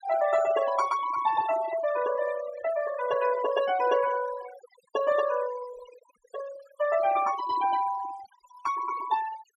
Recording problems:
noise reduction artefacts; signal-to-artefact ratio 13 dB

